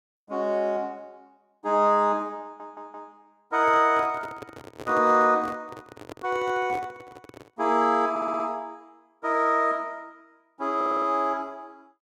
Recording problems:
stutter; at 2.5 s, at 8 s and at 11 s
handling noise; from 3.5 to 7.5 s; peak -10 dB vs average level

